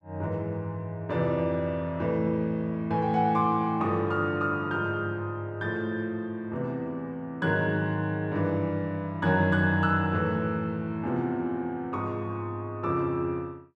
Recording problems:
none

